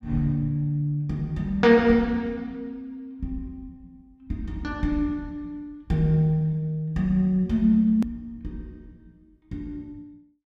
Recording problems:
hard cut with a click; at 8 s

